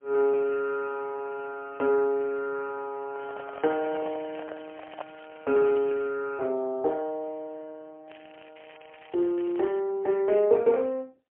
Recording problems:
telephone audio; 300 Hz to 2.5 kHz, AMR-NB, then MP3
microphone handling noise; from 3 to 5 s; peak -5 dB vs average level
crackle; from 3 to 6 s and from 8 to 10 s; loose cable, SNR 24 dB

